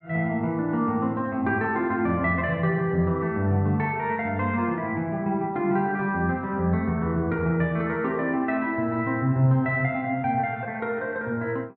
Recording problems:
none

